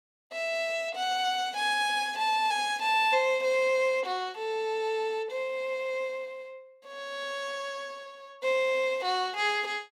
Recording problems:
none

